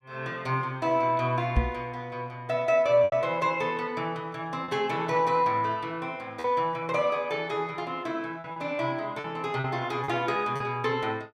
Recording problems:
lost packets; 4% of the sound replaced, filled with repeated pitch periods
microphone bump; at 1.5 s; peak +7 dB vs average level

